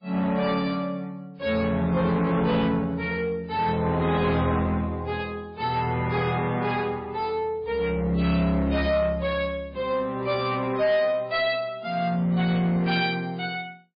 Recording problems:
lossy codec; MP3, log-spectral distance 2 dB, nothing above 4.8 kHz
distorted audio; soft clipping, signal-to-distortion ratio 11 dB

